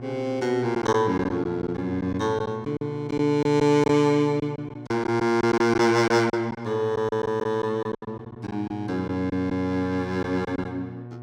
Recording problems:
electrical hum; 60 Hz, harmonics up to 1.1 kHz, SNR 16 dB
lost packets; 8% of the sound replaced, filled with silence

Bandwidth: 17 kHz